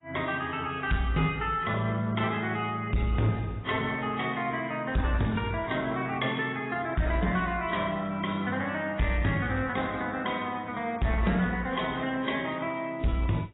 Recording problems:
lossy codec; AAC, then AAC, log-spectral distance 4 dB, nothing above 3.7 kHz
distorted audio; soft clipping, signal-to-distortion ratio 12 dB

